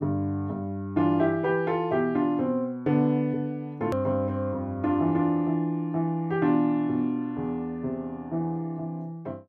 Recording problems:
click at an edit; at 4 s

